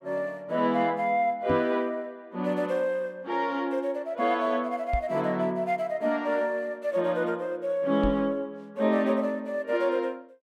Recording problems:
microphone thump; at 1.5 s, at 5 s and at 8 s; peak +2 dB vs average level

